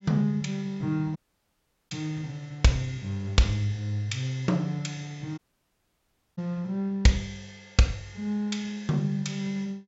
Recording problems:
low-pass filter; nothing above 8 kHz
dropout; at 1 s for 1 s and at 5.5 s for 1 s

